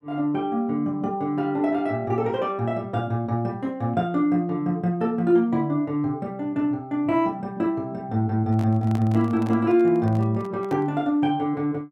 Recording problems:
handling noise; from 8.5 to 11 s; peak -8 dB vs average level

